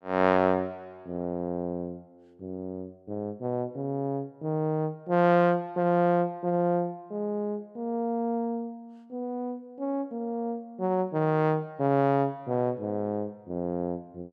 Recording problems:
none

